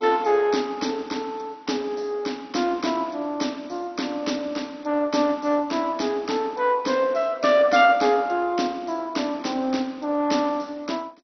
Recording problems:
lossy codec; MP2, log-spectral distance 4 dB, nothing above 6 kHz

